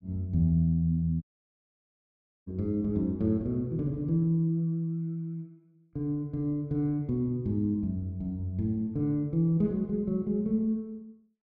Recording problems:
dropout; at 1 s for 1 s

